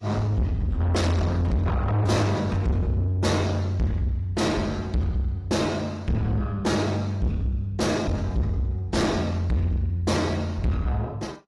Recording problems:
lossy compression; AAC, log-spectral distance 2 dB
distorted audio; soft clipping, signal-to-distortion ratio 7 dB

